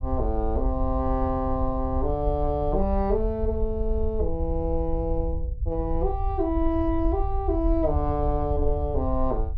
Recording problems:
low-frequency rumble; below 68 Hz, SNR 3 dB

